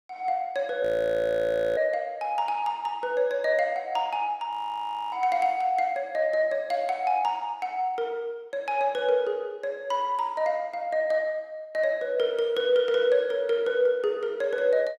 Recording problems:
audio freezing; at 1 s for 1 s and at 4.5 s for 0.5 s

